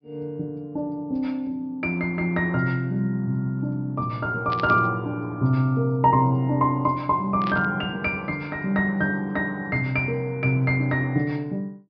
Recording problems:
treble cut off; nothing above 5.5 kHz
burst of static; at 4.5 s and at 7.5 s; peak -7 dB vs average level

